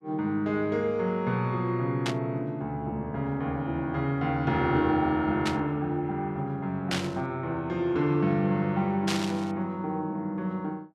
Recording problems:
burst of static; 4 times, first at 2 s; peak +2 dB vs average level

